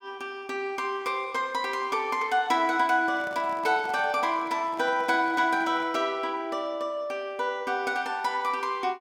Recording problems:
microphone handling noise; from 3 to 6 s; peak -12 dB vs average level

